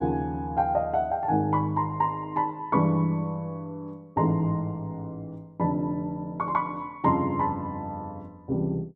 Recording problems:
none

